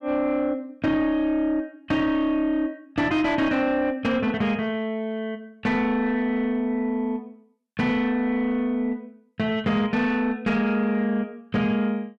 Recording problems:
distorted audio; soft clipping, signal-to-distortion ratio 11 dB

